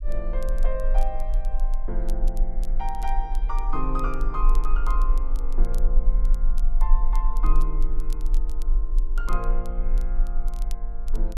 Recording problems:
rumble; below 34 Hz, strongest tone 20 Hz, SNR -8 dB
crackling; vinyl, SNR 18 dB

